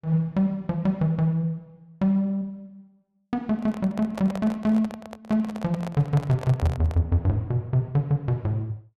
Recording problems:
handling noise; from 3.5 to 7 s; peak -5 dB vs average level

